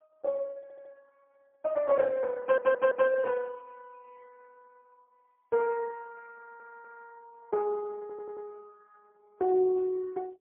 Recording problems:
telephone audio; 190 Hz to 2.2 kHz, AMR-NB, then MP3
stutter; 4 times, first at 0.5 s

